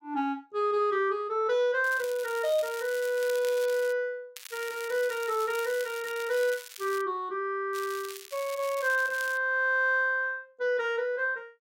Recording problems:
crackle; from 2 to 4 s, from 4.5 to 7 s and from 7.5 to 9.5 s; loose cable, SNR 15 dB

